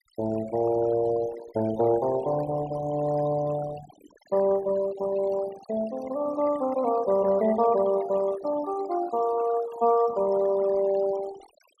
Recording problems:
denoising artefacts; signal-to-artefact ratio 17 dB

